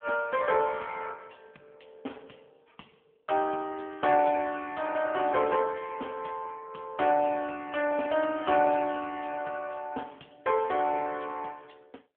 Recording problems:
telephone audio; 300 Hz to 3.4 kHz, AMR-NB

